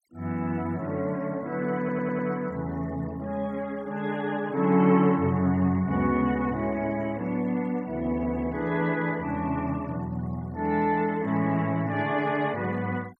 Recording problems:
noise reduction artefacts; signal-to-artefact ratio 26 dB
stutter; at 2 s

